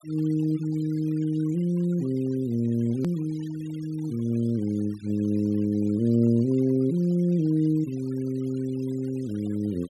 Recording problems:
noise reduction artefacts; signal-to-artefact ratio 26 dB
edit click; at 3 s

